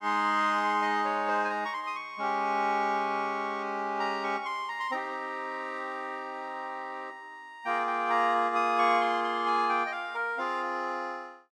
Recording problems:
none

